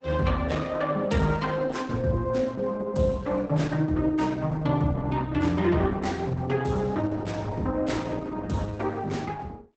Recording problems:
lossy compression; Opus, log-spectral distance 3 dB, nothing above 8 kHz

